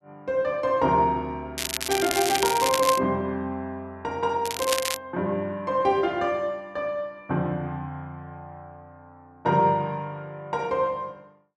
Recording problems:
crackling; from 1.5 to 3 s and at 4.5 s; loose cable, SNR 3 dB

